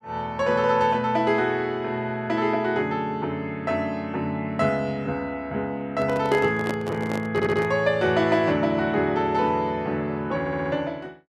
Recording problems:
microphone handling noise; from 6 to 7.5 s; peak -1 dB vs average level
audio stuttering; at 7.5 s and at 10 s

